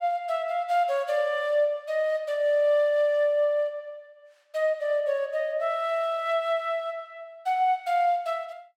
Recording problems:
none

